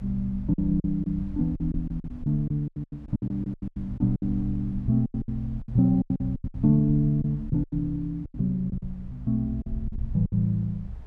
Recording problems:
low-frequency rumble; below 72 Hz, SNR 12 dB
wind on the microphone; below 410 Hz, SNR 26 dB
packet loss; 15% of the sound replaced, filled with silence

